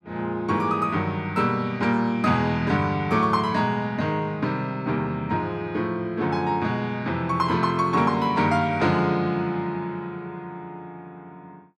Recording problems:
none

